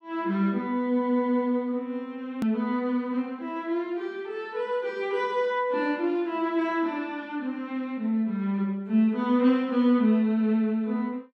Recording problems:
edit click; at 2.5 s

